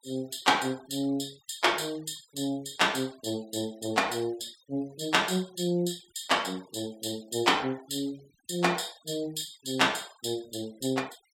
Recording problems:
denoising artefacts; signal-to-artefact ratio 24 dB

